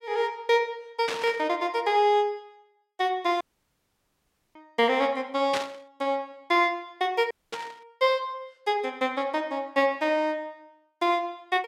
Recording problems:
burst of static; at 1 s, at 5.5 s and at 7.5 s; peak 0 dB vs average level
audio cutting out; at 3.5 s for 1 s and at 7.5 s

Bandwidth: 16 kHz